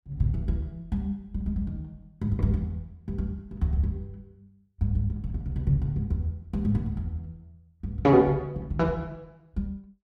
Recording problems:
none

